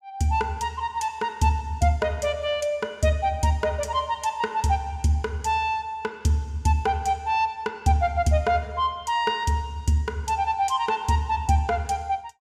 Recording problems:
none

